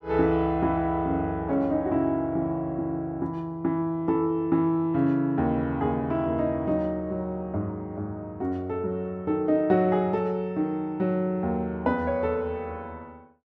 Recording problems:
none

